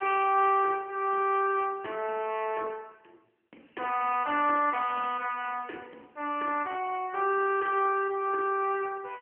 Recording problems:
phone line; 260 Hz to 3.1 kHz, AMR-NB

